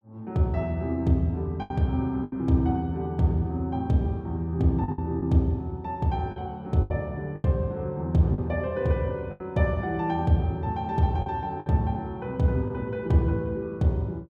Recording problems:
packet loss; 5% of the sound replaced, filled with the last packet

